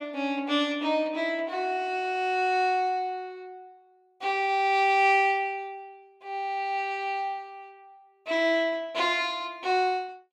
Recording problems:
none

